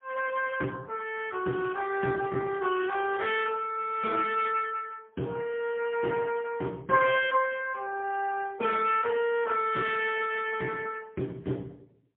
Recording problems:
phone line; 190 Hz to 3.5 kHz, AMR-NB, then MP3

